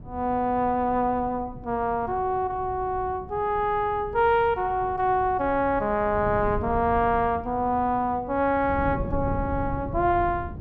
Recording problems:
wind on the microphone; below 180 Hz, SNR 13 dB

